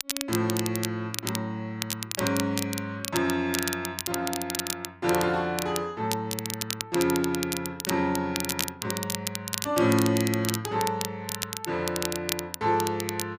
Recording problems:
crackling; vinyl, SNR 4 dB

